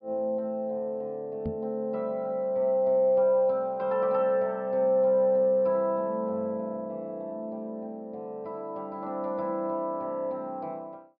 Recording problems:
treble missing; nothing above 5.2 kHz
microphone thump; at 1.5 s; peak -2 dB vs average level

